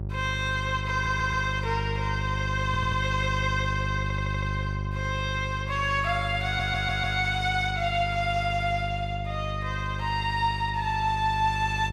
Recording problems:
hum; 50 Hz, harmonics up to 600 Hz, SNR 5 dB
audio stuttering; 4 times, first at 1 s

